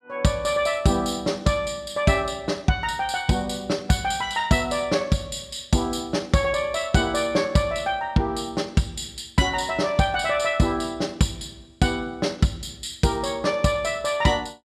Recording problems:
none

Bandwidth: 13.5 kHz